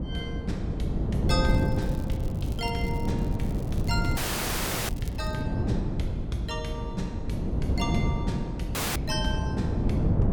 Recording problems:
wind noise; below 220 Hz, SNR -5 dB
crackling; from 1.5 to 5.5 s; loose cable, SNR 17 dB
dropout; at 4 s for 0.5 s and at 9 s

